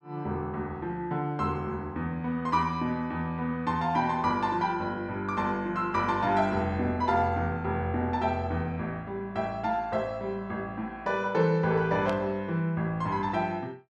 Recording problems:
static burst; at 12 s; peak -8 dB vs average level

